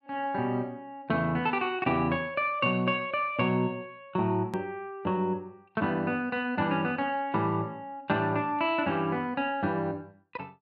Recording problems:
hard cut with a click; at 4.5 s

